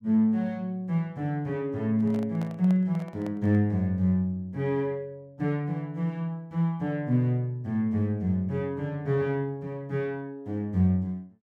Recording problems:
handling noise; from 2 to 3.5 s; peak -10 dB vs average level

